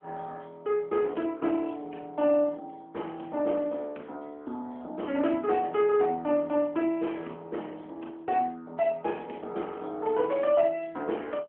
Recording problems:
telephone audio; 220 Hz to 3.3 kHz, AMR-NB

